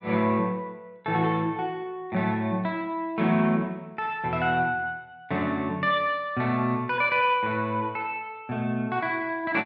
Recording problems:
none

